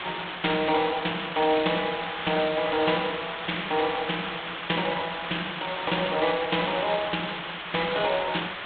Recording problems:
phone line; 220 Hz to 3.9 kHz, G.726
background hiss; SNR 6 dB

